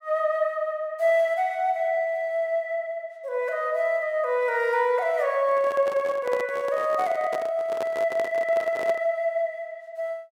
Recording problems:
microphone handling noise; from 5.5 to 9 s; peak -5 dB vs average level

